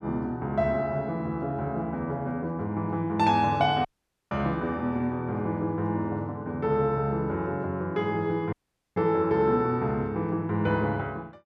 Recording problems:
dropout; at 4 s and at 8.5 s

